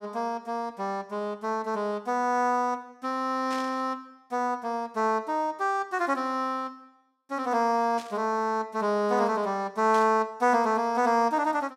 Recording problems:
static burst; at 3.5 s, at 8 s and at 10 s; peak -9 dB vs average level

